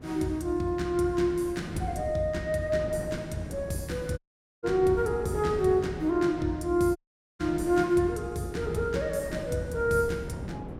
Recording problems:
wind noise; below 390 Hz, SNR 13 dB
audio cutting out; at 4 s and at 7 s

